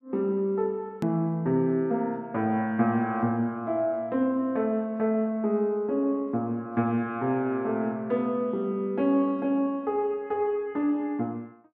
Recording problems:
click at an edit; at 1 s

